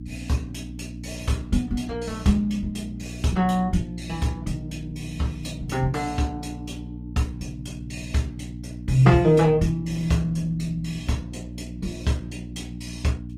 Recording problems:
lossy codec; Opus, log-spectral distance 3 dB, nothing above 18.3 kHz
electrical hum; 60 Hz, harmonics up to 300 Hz, SNR 11 dB

